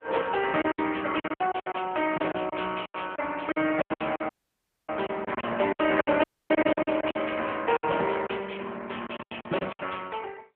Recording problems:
phone line; 240 Hz to 3.3 kHz, AMR-NB
lost packets; 14% of the sound replaced, filled with silence
dropout; at 4.5 s for 0.5 s and at 6 s

